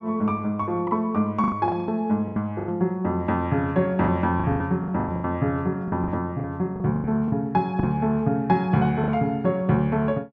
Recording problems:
packet loss; 11% of the sound replaced, filled with the last packet

